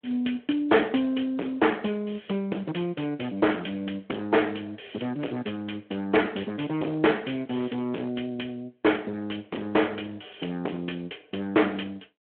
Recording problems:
telephone audio; 220 Hz to 3.3 kHz, Speex
distortion; hard clipping, signal-to-distortion ratio 9 dB

